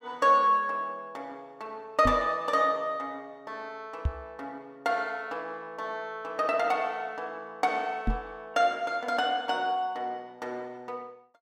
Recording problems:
knock on the microphone; at 2 s, at 4 s and at 8 s; peak +4 dB vs average level

